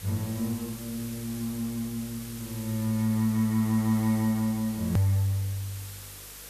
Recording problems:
hum; 50 Hz, harmonics up to 300 Hz, SNR 24 dB
hiss; SNR 14 dB
hard cut with a click; at 5 s

